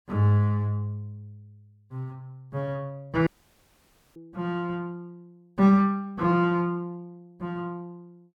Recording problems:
dropout; at 3.5 s for 1 s

